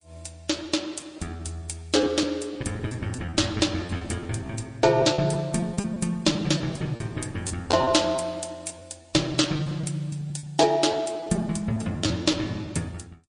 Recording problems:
lossy codec; MP3, log-spectral distance 4 dB
packet loss; 11% of the sound replaced, filled with repeated pitch periods

